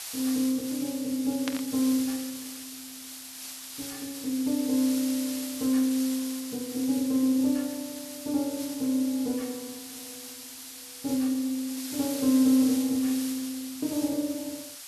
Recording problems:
background hiss; slope +3 dB per octave, SNR 10 dB
burst of static; at 1.5 s; peak -2 dB vs average level

